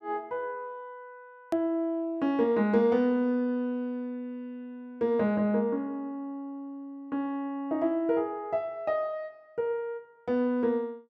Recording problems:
edit click; at 1.5 s

